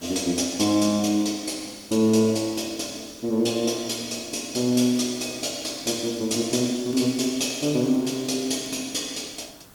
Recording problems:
background hiss; slope -4 dB per octave, SNR 24 dB
crackling; from 4.5 to 8.5 s; loose cable, SNR 26 dB

